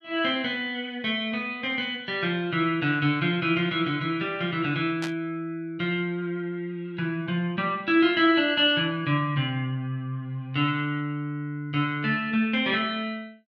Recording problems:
static burst; at 5 s; peak -5 dB vs average level

